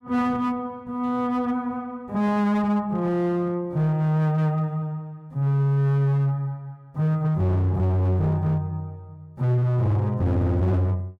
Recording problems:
distortion; hard clipping, signal-to-distortion ratio 10 dB

